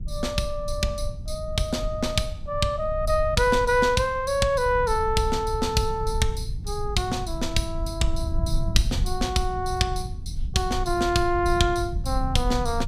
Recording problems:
low-frequency rumble; below 82 Hz, SNR 7 dB

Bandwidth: 15.5 kHz